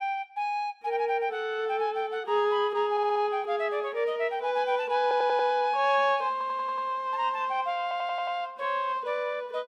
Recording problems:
stutter; 4 times, first at 3 s

